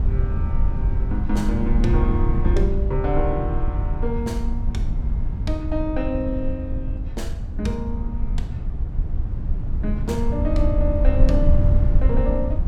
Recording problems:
hum; 60 Hz, harmonics up to 720 Hz, SNR 26 dB
rumble; below 74 Hz, SNR -3 dB

